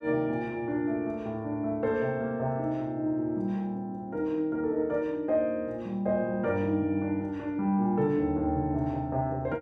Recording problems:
none

